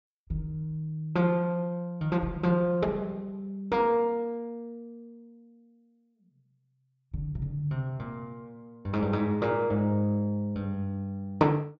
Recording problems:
low-pass filter; nothing above 7.9 kHz

